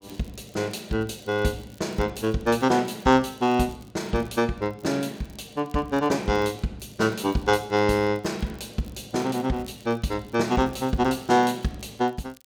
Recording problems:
crackling; vinyl, SNR 29 dB

